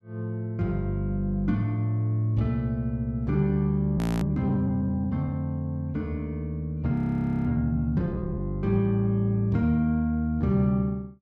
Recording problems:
frozen audio; at 4 s and at 7 s for 0.5 s

